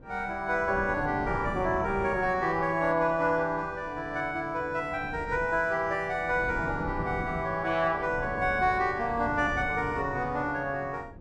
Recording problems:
wind noise; below 310 Hz, SNR 13 dB

